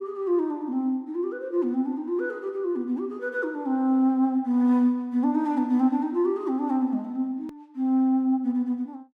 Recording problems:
click at an edit; at 7.5 s

